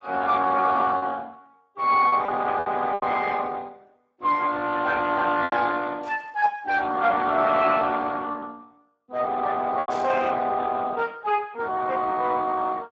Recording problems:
codec artefacts; Speex, log-spectral distance 4 dB
packet loss; 4% of the sound replaced, filled with repeated pitch periods
static burst; at 6 s and at 10 s; peak -16 dB vs average level

